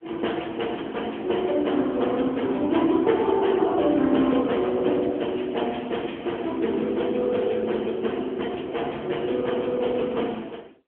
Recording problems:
phone line; 220 Hz to 3.3 kHz, AMR-NB

